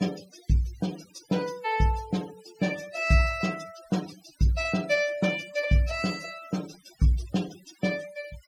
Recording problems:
noise reduction artefacts; signal-to-artefact ratio 17 dB

